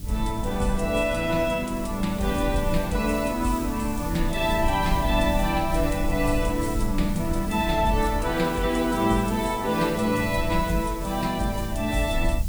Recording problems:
codec artefacts; AAC, log-spectral distance 3 dB
background hiss; slope +5 dB per octave, SNR 16 dB
rumble; below 74 Hz, SNR 9 dB

